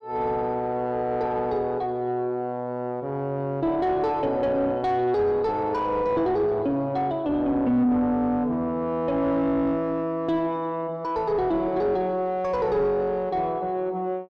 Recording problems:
distortion; soft clipping, signal-to-distortion ratio 10 dB

